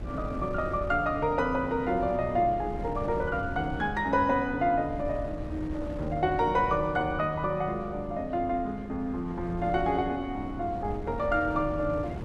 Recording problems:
wind noise; below 230 Hz, SNR 11 dB

